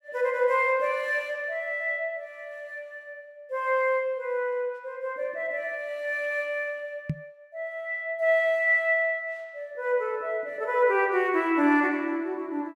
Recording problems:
knock on the microphone; at 7 s; peak +1 dB vs average level

